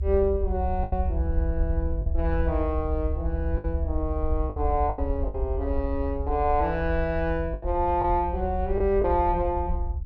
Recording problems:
low-frequency rumble; below 72 Hz, SNR 2 dB
lost packets; 5% of the sound replaced, filled with the last packet

